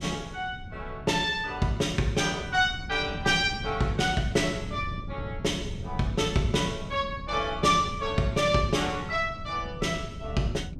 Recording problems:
wind noise; below 180 Hz, SNR 12 dB

